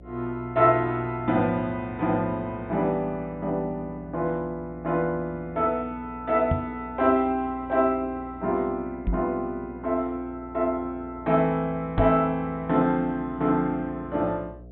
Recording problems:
treble cut off; nothing above 4 kHz
hum; 60 Hz, harmonics up to 720 Hz, SNR 20 dB
knock on the microphone; at 6.5 s, at 9 s and at 12 s; peak +4 dB vs average level

